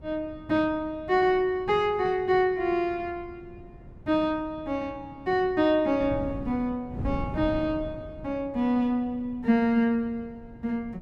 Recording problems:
wind noise; below 210 Hz, SNR 16 dB

